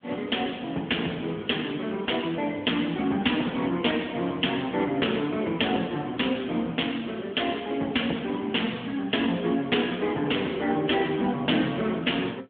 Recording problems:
telephone audio; 220 Hz to 3.4 kHz, AMR-NB

